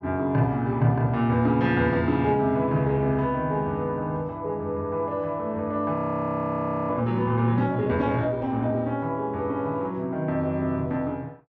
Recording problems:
audio freezing; at 6 s for 1 s

